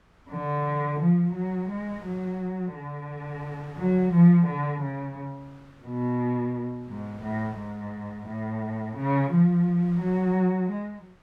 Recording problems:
wind noise; below 1.4 kHz, SNR 27 dB

